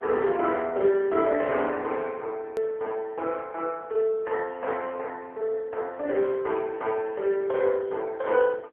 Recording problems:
phone line; 280 Hz to 3.1 kHz, AMR-NB
hard cut with a click; at 2.5 s

